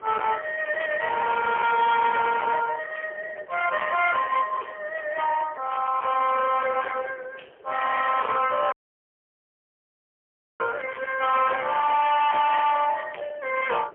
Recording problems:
telephone audio; 320 Hz to 3.3 kHz, AMR-NB, then MP3
distorted audio; hard clipping, signal-to-distortion ratio 7 dB
wind noise; below 1.8 kHz, SNR 14 dB
dropout; at 8.5 s for 2 s

